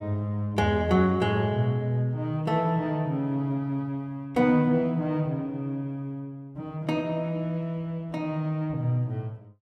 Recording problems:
none

